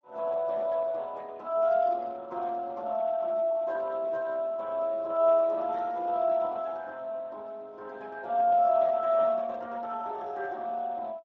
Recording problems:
lossy codec; Speex, log-spectral distance 2 dB

